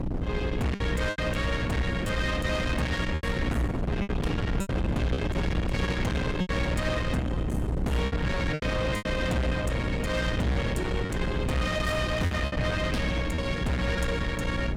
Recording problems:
distortion; soft clipping, signal-to-distortion ratio 8 dB
electrical hum; 60 Hz, harmonics up to 300 Hz, SNR 6 dB
wind noise; below 460 Hz, SNR 2 dB
lost packets; 7% of the sound replaced, filled with repeated pitch periods

